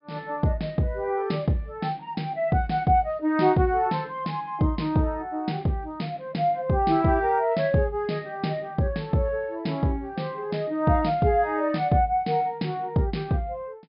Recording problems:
treble missing; nothing above 5.5 kHz

